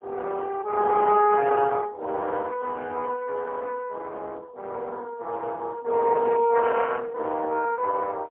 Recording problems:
phone line; 260 Hz to 3.2 kHz, AMR-NB, then MP3

